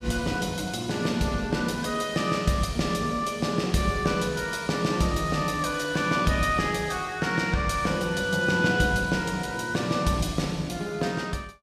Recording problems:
none

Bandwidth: 14.5 kHz